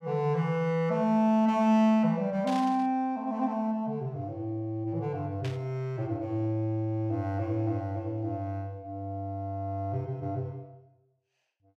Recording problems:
burst of static; at 2.5 s and at 5.5 s; peak -8 dB vs average level

